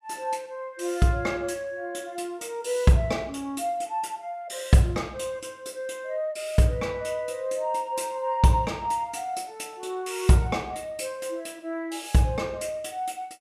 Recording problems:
none

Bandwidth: 15 kHz